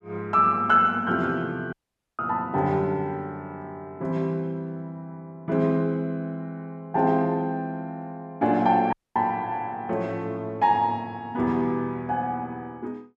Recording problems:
dropout; at 1.5 s and at 9 s

